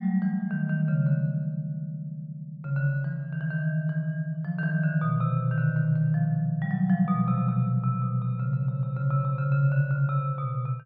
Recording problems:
none

